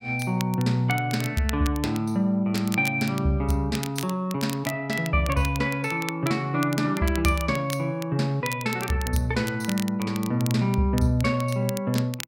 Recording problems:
crackle; vinyl, SNR 14 dB

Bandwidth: 16 kHz